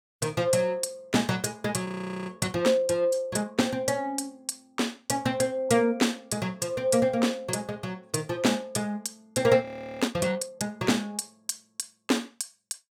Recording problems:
frozen audio; at 2 s and at 9.5 s

